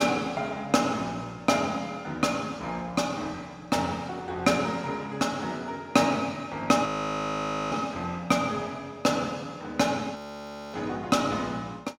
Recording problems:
frozen audio; at 7 s for 1 s and at 10 s for 0.5 s

